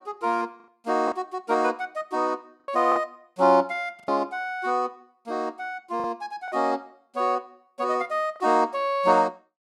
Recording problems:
packet loss; 4% of the sound replaced, filled with the last packet

